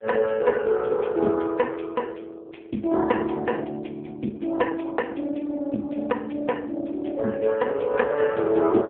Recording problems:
phone line; 240 Hz to 2.7 kHz, AMR-NB

